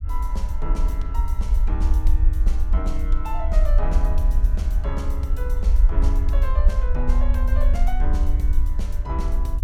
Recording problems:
low-frequency rumble; below 56 Hz, SNR -10 dB

